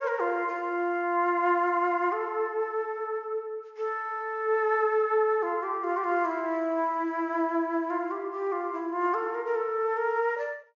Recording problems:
treble missing; nothing above 6.9 kHz

